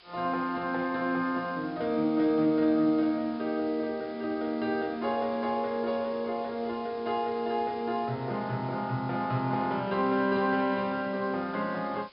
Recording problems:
treble missing; nothing above 5.5 kHz
background hiss; SNR 24 dB

